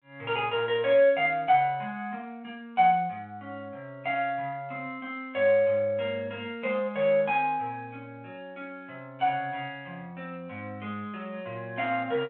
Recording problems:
telephone audio; 240 Hz to 3.7 kHz, G.726

